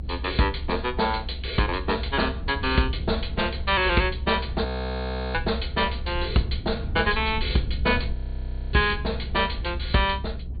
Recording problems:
treble missing; nothing above 4.6 kHz
rumble; below 76 Hz, strongest tone 66 Hz, SNR 7 dB
audio freezing; at 4.5 s for 0.5 s and at 8 s for 0.5 s

